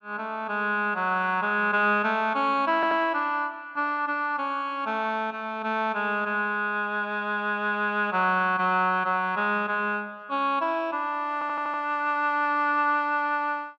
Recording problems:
audio stuttering; at 3 s and at 11 s

